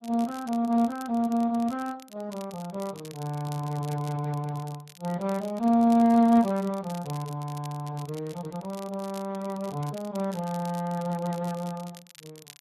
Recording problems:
lossy codec; Speex, log-spectral distance 2 dB
crackle; vinyl, SNR 21 dB

